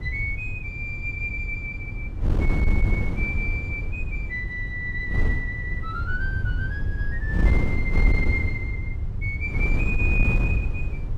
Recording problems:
low-frequency rumble; below 100 Hz, SNR 3 dB
wind on the microphone; below 96 Hz, SNR -3 dB

